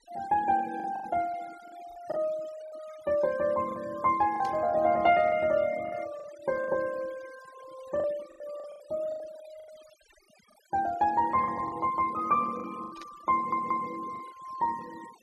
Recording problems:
denoising artefacts; signal-to-artefact ratio 21 dB
packet loss; 9% of the sound replaced, filled with the last packet
static burst; at 4.5 s and at 13 s; peak -15 dB vs average level
stutter; at 13 s

